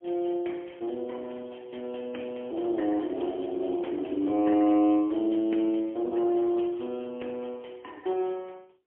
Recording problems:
phone line; 260 Hz to 3.2 kHz, AMR-NB, then MP3

